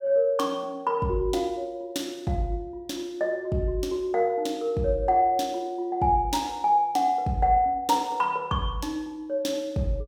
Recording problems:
none

